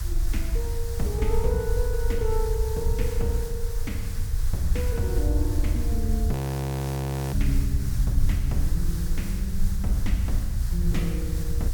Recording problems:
electrical hum; 60 Hz, harmonics up to 960 Hz, SNR 27 dB
background hiss; SNR 10 dB
rumble; below 72 Hz, SNR -3 dB
audio freezing; at 6.5 s for 1 s

